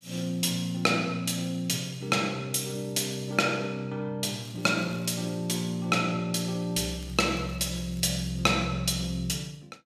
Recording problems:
crackling; at 4.5 s and from 7 to 8.5 s; loose cable, SNR 25 dB

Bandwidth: 14.5 kHz